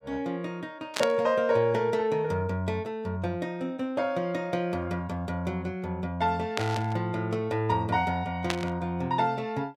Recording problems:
static burst; at 1 s, at 6.5 s and at 8.5 s; peak +3 dB vs average level

